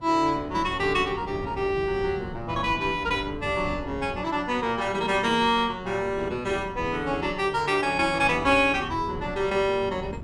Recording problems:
wind noise; below 250 Hz, SNR 15 dB

